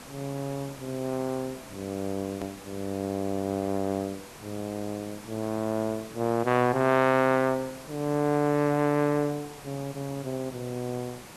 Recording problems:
background hiss; slope -4 dB per octave, SNR 16 dB
hard cut with a click; at 2.5 s

